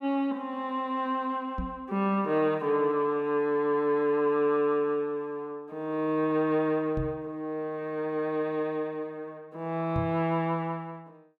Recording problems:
microphone bump; at 1.5 s, at 7 s and at 10 s; peak 0 dB vs average level

